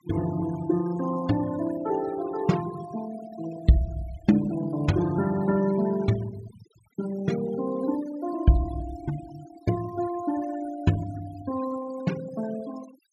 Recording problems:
noise reduction artefacts; signal-to-artefact ratio 15 dB

